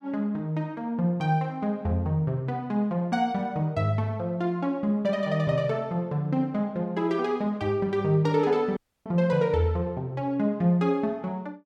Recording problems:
audio cutting out; at 9 s

